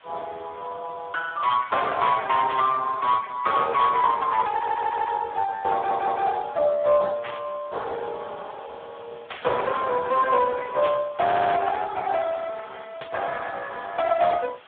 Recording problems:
phone line; 340 Hz to 3.8 kHz, Speex
distorted audio; hard clipping, signal-to-distortion ratio 10 dB
hiss; SNR 26 dB
burst of static; 5 times, first at 2.5 s; peak -5 dB vs average level
stutter; at 4.5 s, at 5.5 s and at 11 s

